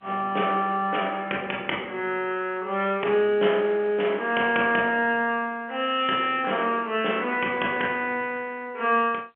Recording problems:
telephone audio; 280 Hz to 3.2 kHz, G.711

